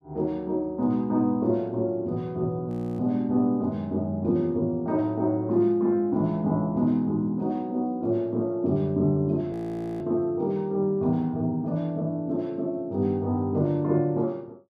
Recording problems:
audio freezing; at 2.5 s and at 9.5 s

